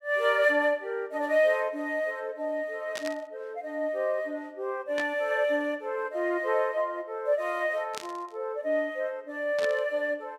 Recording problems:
static burst; 4 times, first at 3 s; peak -4 dB vs average level

